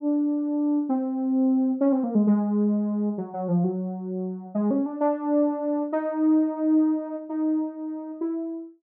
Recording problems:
none

